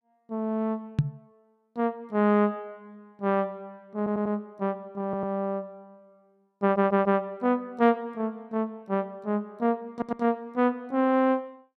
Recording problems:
knock on the microphone; at 1 s; peak +8 dB vs average level
stutter; 4 times, first at 4 s

